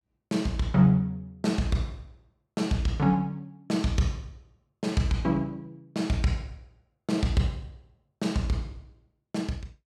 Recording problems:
none

